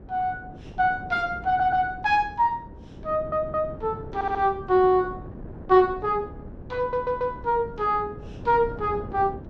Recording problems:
wind noise; below 330 Hz, SNR 16 dB
audio stuttering; 4 times, first at 1.5 s

